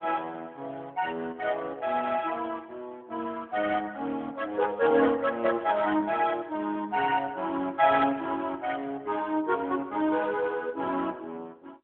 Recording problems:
telephone audio; 240 Hz to 3.6 kHz, AMR-NB

